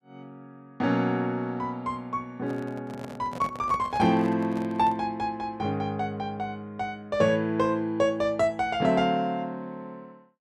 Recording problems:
handling noise; from 2.5 to 5 s; peak -8 dB vs average level

